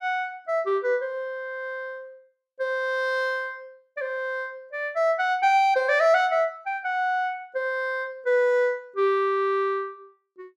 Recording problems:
none

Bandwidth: 14 kHz